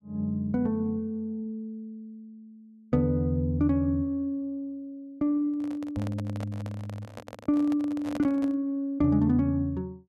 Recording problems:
microphone handling noise; from 5.5 to 8.5 s; peak -4 dB vs average level

